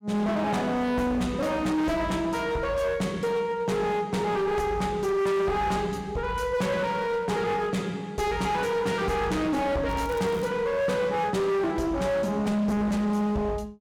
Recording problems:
distorted audio; hard clipping, uneven, signal-to-distortion ratio 7 dB
crackling; at 10 s; loose cable, SNR 24 dB

